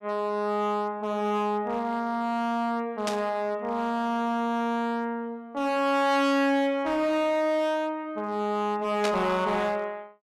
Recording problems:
distortion; hard clipping, signal-to-distortion ratio 6 dB
burst of static; at 3 s and at 9 s; peak 0 dB vs average level

